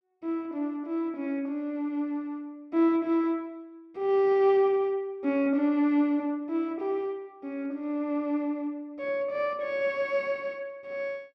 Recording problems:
none

